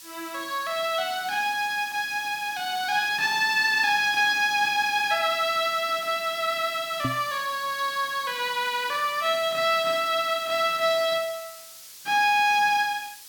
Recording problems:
hiss; slope +4 dB per octave, SNR 18 dB
knock on the microphone; at 7 s; peak -2 dB vs average level

